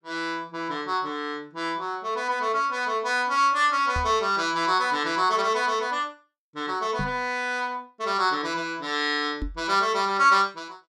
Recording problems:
knock on the microphone; at 4 s, at 7 s and at 9.5 s; peak -3 dB vs average level

